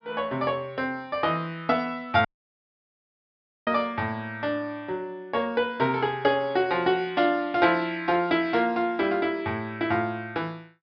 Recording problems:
treble missing; nothing above 5.5 kHz
audio cutting out; at 2.5 s for 1.5 s

